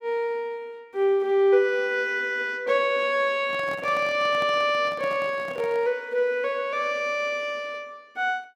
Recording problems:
microphone handling noise; from 3.5 to 6 s; peak -10 dB vs average level

